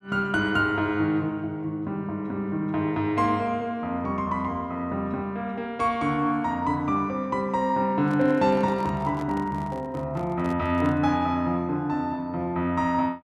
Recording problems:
handling noise; from 8 to 11 s; peak -9 dB vs average level

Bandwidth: 13 kHz